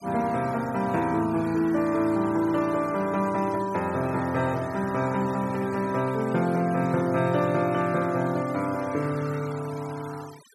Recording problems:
noise reduction artefacts; signal-to-artefact ratio 20 dB

